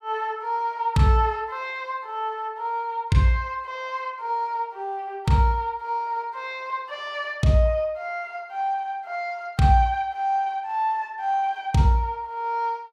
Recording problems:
none

